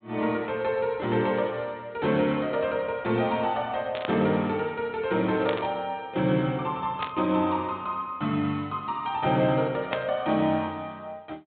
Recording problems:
low-pass filter; nothing above 4 kHz
burst of static; 4 times, first at 4 s; peak +1 dB vs average level

